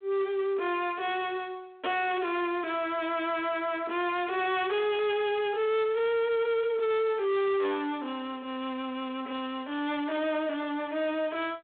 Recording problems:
telephone audio; 260 Hz to 3.8 kHz, G.726
distortion; soft clipping, signal-to-distortion ratio 7 dB
static burst; at 2 s, at 5 s and at 10 s; peak -14 dB vs average level

